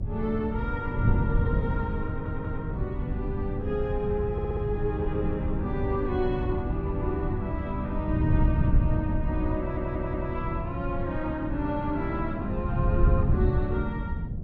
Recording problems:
hum; 60 Hz, harmonics up to 720 Hz, SNR 28 dB
wind noise; below 130 Hz, SNR -2 dB
audio stuttering; at 2 s, at 4.5 s and at 9.5 s

